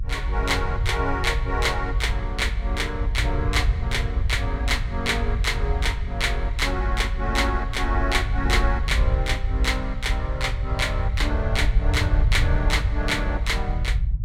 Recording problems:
low-frequency rumble; below 80 Hz, SNR 0 dB

